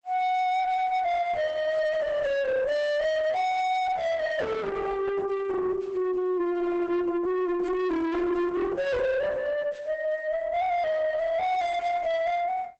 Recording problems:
codec artefacts; Opus, log-spectral distance 2 dB, nothing above 7.8 kHz
distorted audio; soft clipping, signal-to-distortion ratio 5 dB

